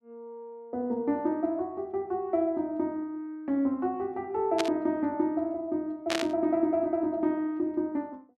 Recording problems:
static burst; at 4.5 s and at 6 s; peak +3 dB vs average level

